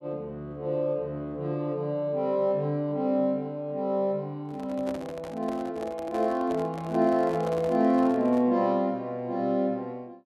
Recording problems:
microphone handling noise; from 4.5 to 8.5 s; peak -8 dB vs average level

